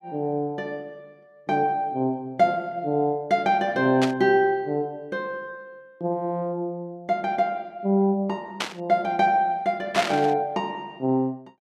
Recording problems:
burst of static; at 4 s, at 8.5 s and at 10 s; peak +3 dB vs average level

